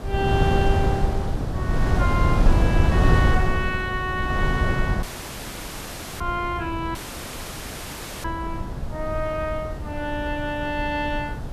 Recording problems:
hiss; SNR 29 dB
wind noise; below 160 Hz, SNR -3 dB
dropout; at 5 s for 1 s and at 7 s for 1.5 s

